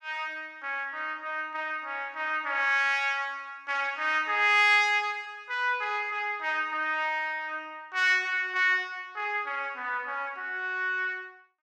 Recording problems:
none

